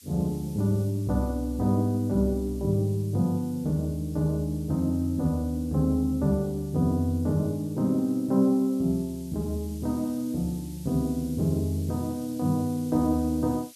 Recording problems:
background hiss; slope +9 dB per octave, SNR 23 dB

